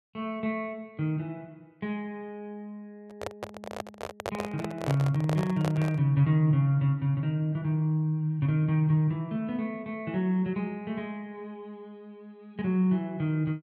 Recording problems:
handling noise; from 3 to 6 s; peak 0 dB vs average level

